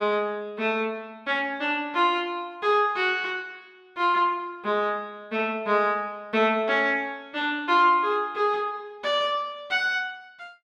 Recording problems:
none

